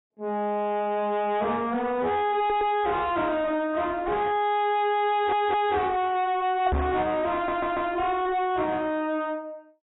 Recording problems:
lossy compression; AAC, log-spectral distance 2 dB, nothing above 3.4 kHz
distortion; soft clipping, signal-to-distortion ratio 6 dB
audio stuttering; at 2.5 s, at 5 s and at 7.5 s
microphone thump; at 6.5 s; peak +3 dB vs average level

